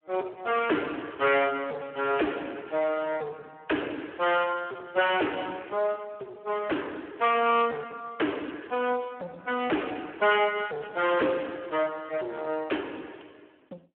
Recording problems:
phone line; 260 Hz to 3.3 kHz, Speex
distorted audio; soft clipping, signal-to-distortion ratio 11 dB

